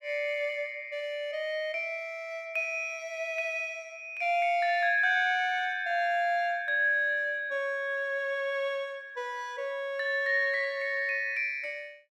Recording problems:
none

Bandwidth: 16 kHz